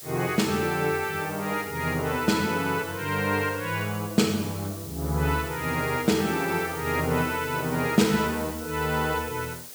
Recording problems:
hiss; SNR 13 dB

